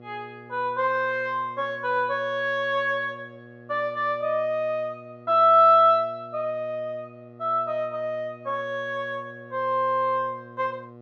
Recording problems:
hum; 60 Hz, harmonics up to 1.4 kHz, SNR 22 dB

